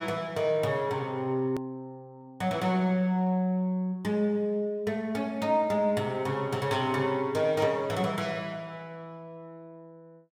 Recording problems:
hard cut with a click; at 1.5 s

